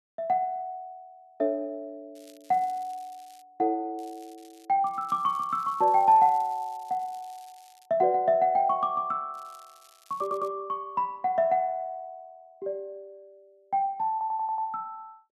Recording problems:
crackle; 4 times, first at 2 s; loose cable, SNR 29 dB
stutter; at 10 s and at 14 s

